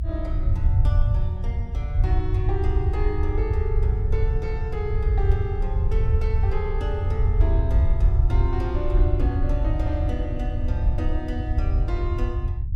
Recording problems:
rumble; below 86 Hz, SNR -8 dB

